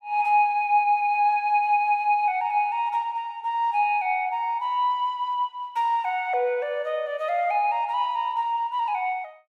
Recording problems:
none

